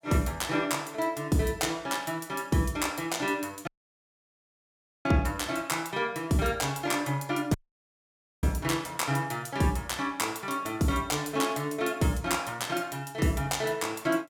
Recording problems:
dropout; at 3.5 s for 1.5 s and at 7.5 s for 1 s

